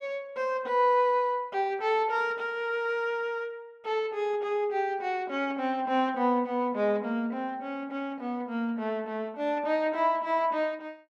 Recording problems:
none

